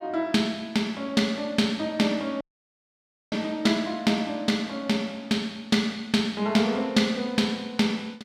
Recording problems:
audio cutting out; at 2.5 s for 1 s

